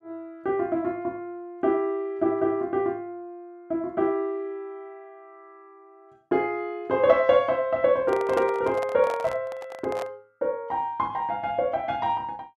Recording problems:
microphone handling noise; from 8 to 10 s; peak -3 dB vs average level

